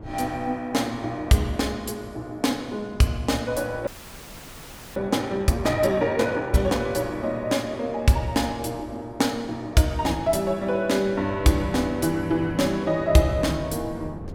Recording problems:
wind noise; below 310 Hz, SNR 18 dB
audio freezing; at 4 s for 1 s

